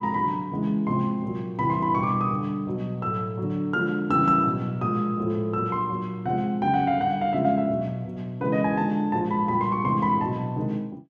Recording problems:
none

